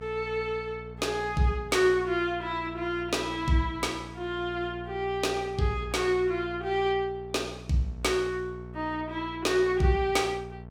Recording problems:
hum; 60 Hz, harmonics up to 1.1 kHz, SNR 15 dB

